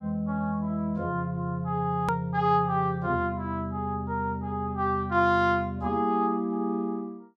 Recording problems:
edit click; at 2 s

